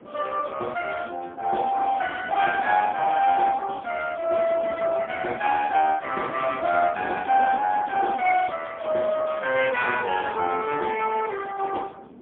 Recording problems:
telephone audio; 220 Hz to 3.1 kHz, AMR-NB, then MP3
wind on the microphone; below 470 Hz, SNR 18 dB

